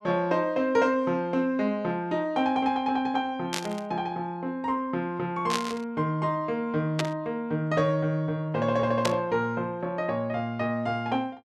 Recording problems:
burst of static; 4 times, first at 3.5 s; peak +3 dB vs average level

